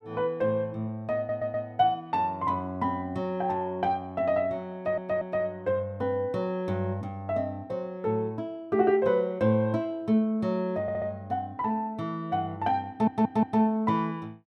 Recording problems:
audio stuttering; 4 times, first at 1 s

